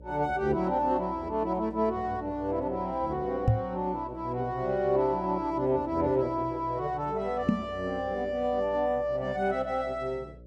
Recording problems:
hum; 60 Hz, harmonics up to 600 Hz, SNR 20 dB
knock on the microphone; at 3.5 s and at 7.5 s; peak +9 dB vs average level

